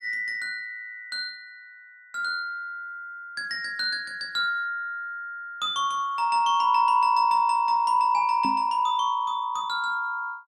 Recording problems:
microphone thump; at 8.5 s; peak -3 dB vs average level

